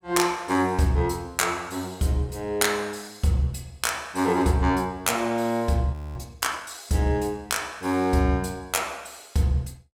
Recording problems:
frozen audio; at 6 s

